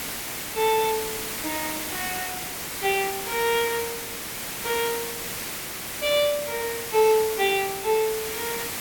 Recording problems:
background hiss; slope -1 dB per octave, SNR 4 dB

